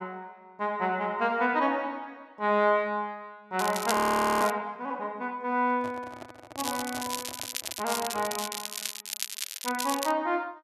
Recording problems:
crackle; at 3.5 s and from 6.5 to 10 s; loose cable, SNR 6 dB
frozen audio; at 4 s
microphone handling noise; from 5.5 to 8.5 s; peak -9 dB vs average level

